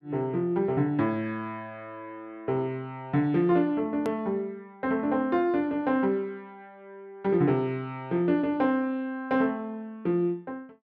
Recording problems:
click at an edit; at 4 s

